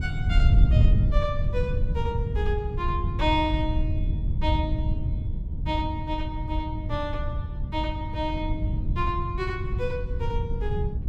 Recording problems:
wind on the microphone; below 110 Hz, SNR -4 dB

